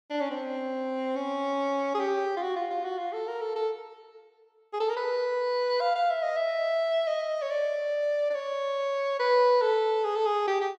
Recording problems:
none

